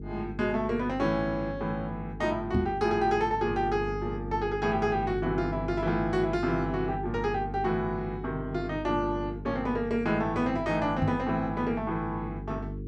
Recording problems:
electrical hum; 50 Hz, harmonics up to 450 Hz, SNR 9 dB
microphone thump; at 2.5 s and at 11 s; peak +5 dB vs average level

